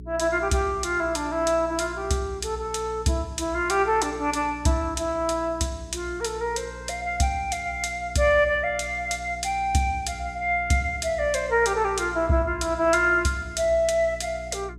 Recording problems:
hum; 60 Hz, harmonics up to 420 Hz, SNR 17 dB

